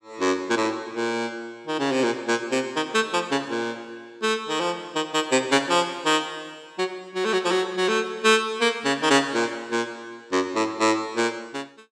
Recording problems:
none

